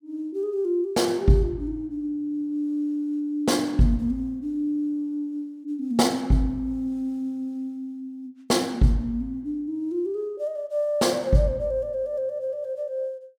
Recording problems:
none

